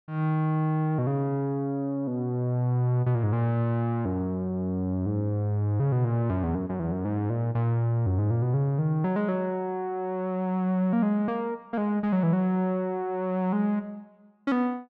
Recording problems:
none

